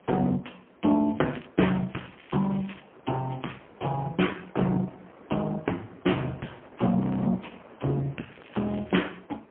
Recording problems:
phone line; 170 Hz to 3.3 kHz, AMR-NB, then MP3
distortion; hard clipping, uneven, signal-to-distortion ratio 13 dB
wind on the microphone; below 1 kHz, SNR 23 dB
crackle; 4 times, first at 1 s; loose cable, SNR 24 dB
frozen audio; at 7 s

